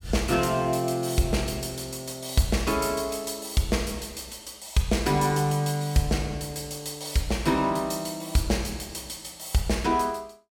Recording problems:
none

